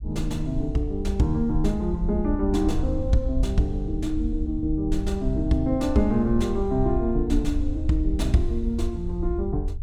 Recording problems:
rumble; below 68 Hz, SNR 5 dB

